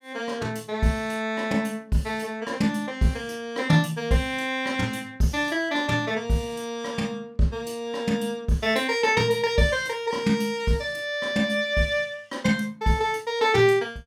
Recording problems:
none

